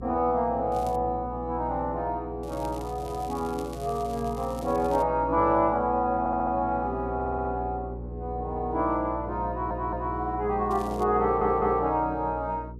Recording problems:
hum; 60 Hz, harmonics up to 480 Hz, SNR 12 dB
crackling; at 0.5 s, from 2.5 to 5 s and at 11 s; loose cable, SNR 23 dB
stutter; 4 times, first at 6 s

